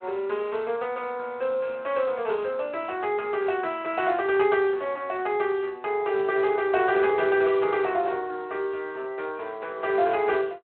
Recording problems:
phone line; 340 Hz to 3.4 kHz, Speex

